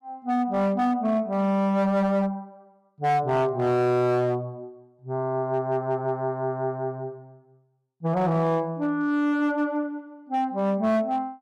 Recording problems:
distortion; hard clipping, signal-to-distortion ratio 11 dB

